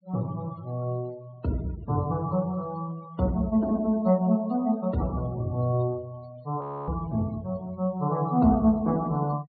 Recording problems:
treble missing; nothing above 4.4 kHz
noise reduction artefacts; signal-to-artefact ratio 24 dB
frozen audio; at 6.5 s

